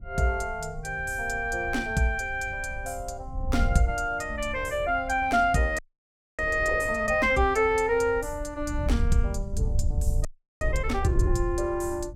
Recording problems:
wind noise; below 80 Hz, SNR 7 dB
audio freezing; at 6 s for 0.5 s and at 10 s

